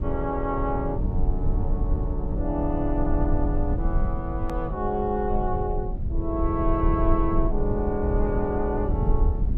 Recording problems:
rumble; below 80 Hz, SNR 0 dB
click at an edit; at 4.5 s

